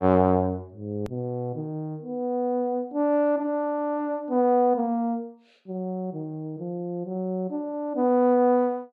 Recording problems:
edit click; at 1 s

